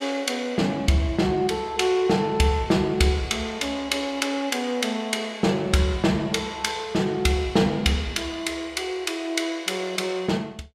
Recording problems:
none

